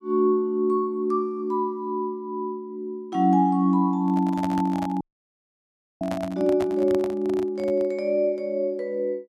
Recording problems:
microphone handling noise; from 4 to 8 s; peak -5 dB vs average level
dropout; at 5 s for 1 s

